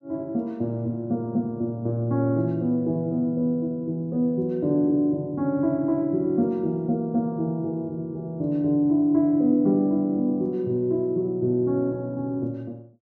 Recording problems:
none

